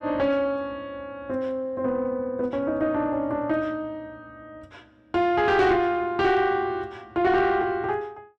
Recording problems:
distorted audio; soft clipping, signal-to-distortion ratio 11 dB

